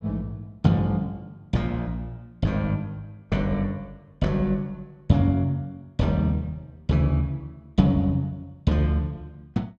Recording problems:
none

